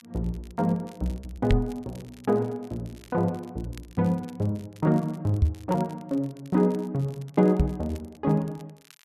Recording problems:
crackle; vinyl, SNR 27 dB
lost packets; 1.2% of the sound replaced, filled with repeated pitch periods
knock on the microphone; at 1.5 s, at 5.5 s and at 7.5 s; peak +9 dB vs average level

